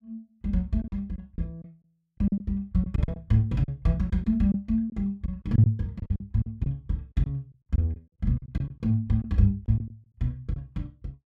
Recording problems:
lost packets; 10% of the sound replaced, filled with silence

